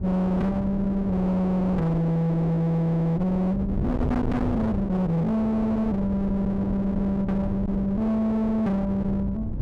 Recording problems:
distorted audio; hard clipping, uneven, signal-to-distortion ratio 6 dB
wind on the microphone; below 250 Hz, SNR 7 dB

